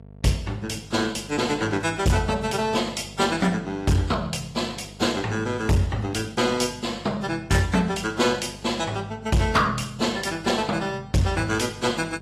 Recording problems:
lossy codec; AAC, log-spectral distance 4 dB, nothing above 14.3 kHz
distortion; hard clipping, signal-to-distortion ratio 12 dB
hum; 50 Hz, harmonics up to 950 Hz, SNR 21 dB

